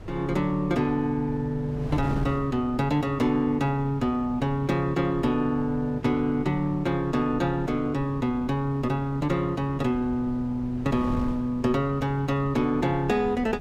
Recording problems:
wind noise; below 230 Hz, SNR 14 dB

